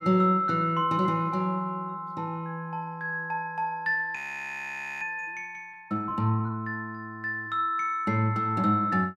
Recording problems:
frozen audio; at 4 s for 1 s

